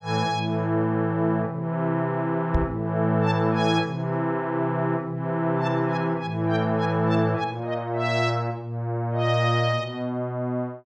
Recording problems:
microphone bump; at 2.5 s; peak +4 dB vs average level

